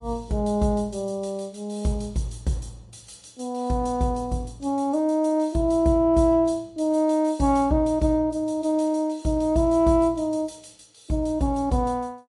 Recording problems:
lossy compression; MP3, log-spectral distance 2 dB

